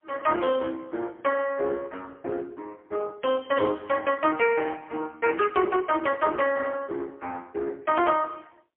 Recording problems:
phone line; 240 Hz to 2.9 kHz, AMR-NB, then MP3

